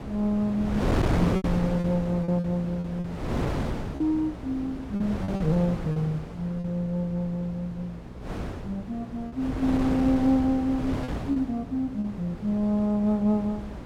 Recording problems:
hum; 60 Hz, harmonics up to 600 Hz, SNR 18 dB
wind on the microphone; below 500 Hz, SNR 6 dB
packet loss; 6% of the sound replaced, filled with repeated pitch periods

